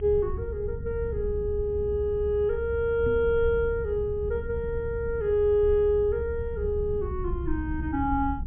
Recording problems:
low-pass filter; nothing above 3.3 kHz
low-frequency rumble; below 86 Hz, SNR 8 dB
microphone thump; at 3 s; peak -3 dB vs average level

